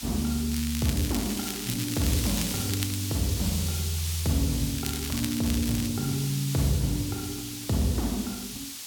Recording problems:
hiss; SNR 5 dB
crackling; from 0.5 to 3 s and from 4.5 to 6 s; loose cable, SNR 7 dB

